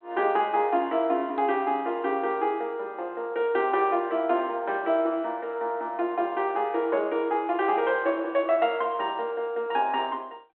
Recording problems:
phone line; 280 Hz to 3.5 kHz, G.726

